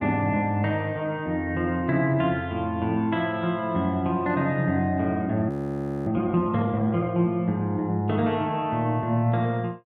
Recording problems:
frozen audio; at 5.5 s for 0.5 s

